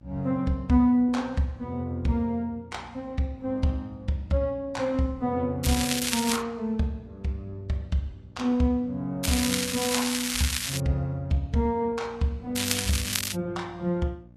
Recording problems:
lossy codec; Vorbis, log-spectral distance 4 dB, nothing above 11.3 kHz
hum; 60 Hz, harmonics up to 900 Hz, SNR 23 dB
crackling; at 5.5 s, from 9 to 11 s and at 13 s; loose cable, SNR 0 dB

